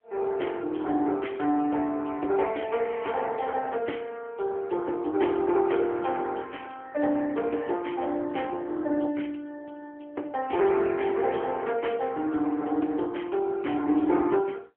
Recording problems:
telephone audio; 260 Hz to 3.3 kHz, AMR-NB

